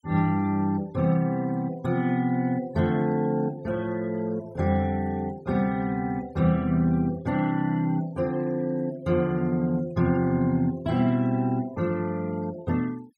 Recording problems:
denoising artefacts; signal-to-artefact ratio 25 dB

